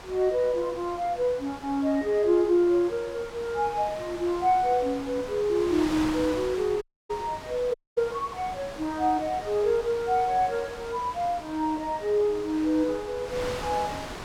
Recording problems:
wind noise; below 2.7 kHz, SNR 13 dB
dropout; at 7 s and at 7.5 s

